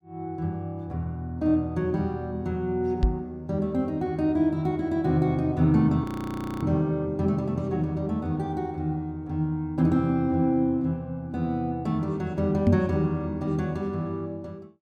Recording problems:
microphone thump; at 3 s and at 13 s; peak +8 dB vs average level
frozen audio; at 6 s for 0.5 s

